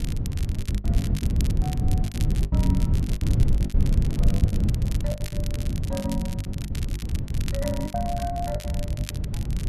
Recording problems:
wind on the microphone; below 130 Hz, SNR -8 dB
crackling; vinyl, SNR 7 dB
packet loss; 17% of the sound replaced, filled with the last packet

